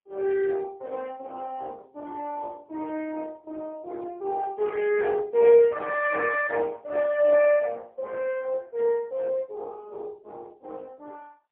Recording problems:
phone line; 260 Hz to 2.9 kHz, AMR-NB, then MP3

